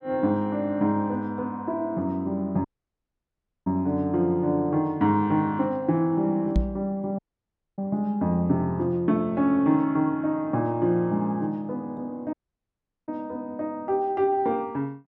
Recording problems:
audio cutting out; at 2.5 s for 1 s, at 7 s for 0.5 s and at 12 s for 1 s
microphone thump; at 6.5 s; peak +5 dB vs average level

